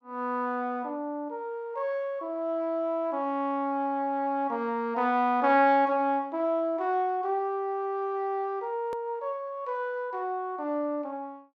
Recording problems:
edit click; at 9 s

